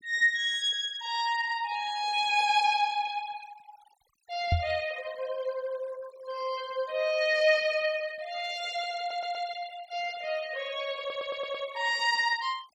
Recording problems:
denoising artefacts; signal-to-artefact ratio 21 dB
microphone bump; at 4.5 s; peak +5 dB vs average level
audio stuttering; at 9 s and at 11 s

